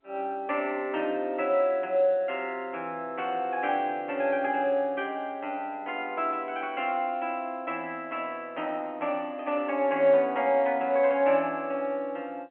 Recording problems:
telephone audio; 260 Hz to 3.1 kHz, G.711

